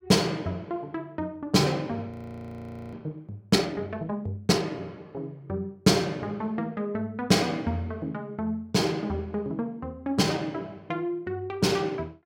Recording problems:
frozen audio; at 2 s for 1 s

